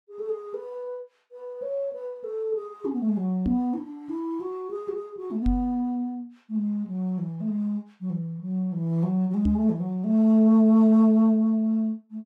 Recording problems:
microphone thump; at 3.5 s, at 5.5 s and at 9.5 s; peak +1 dB vs average level

